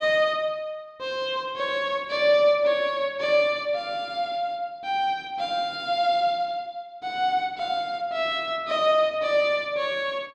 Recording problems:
none

